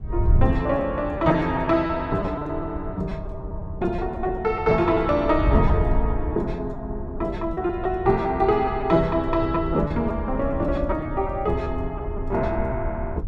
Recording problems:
wind noise; below 90 Hz, SNR 7 dB
lost packets; 7% of the sound replaced, filled with repeated pitch periods

